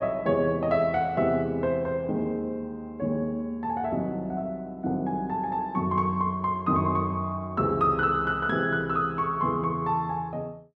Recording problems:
none

